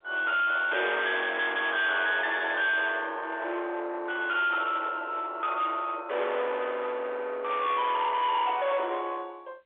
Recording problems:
phone line; 390 Hz to 3.8 kHz, G.711
distortion; soft clipping, signal-to-distortion ratio 8 dB

